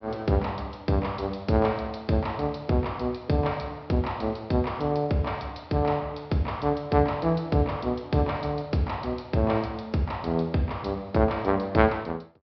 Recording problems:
low-pass filter; nothing above 5.5 kHz

